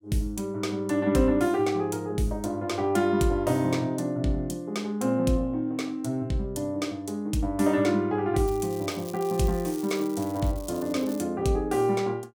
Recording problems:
crackling; from 8.5 to 11 s; loose cable, SNR 19 dB

